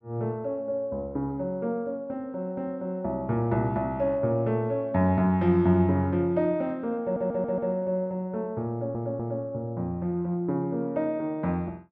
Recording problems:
stutter; at 7 s and at 8.5 s

